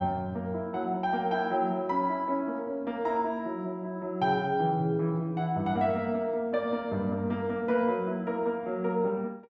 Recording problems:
none

